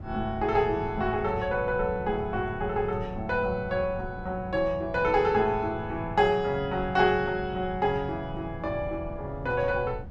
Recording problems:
low-frequency rumble; below 160 Hz, SNR 13 dB

